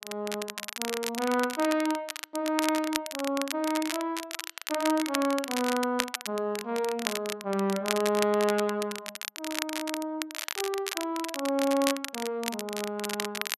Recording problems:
crackle; vinyl, SNR 5 dB

